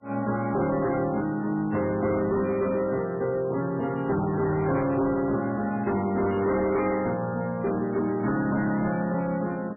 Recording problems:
lossy compression; MP3, log-spectral distance 3 dB, nothing above 2.8 kHz
distorted audio; hard clipping, signal-to-distortion ratio 12 dB

